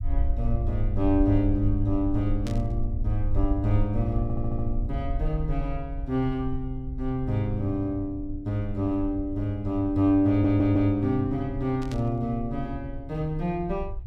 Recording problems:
low-frequency rumble; below 58 Hz, SNR 7 dB
burst of static; at 2.5 s and at 12 s; peak -10 dB vs average level
stutter; at 4 s and at 10 s

